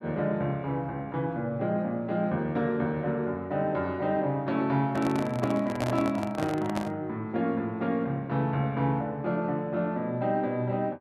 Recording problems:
handling noise; from 5 to 7 s; peak +1 dB vs average level

